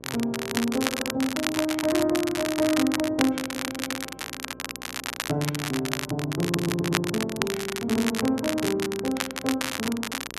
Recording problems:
hum; 60 Hz, harmonics up to 1.2 kHz, SNR 21 dB
crackling; vinyl, SNR 4 dB
stutter; at 1 s, at 3.5 s and at 6.5 s

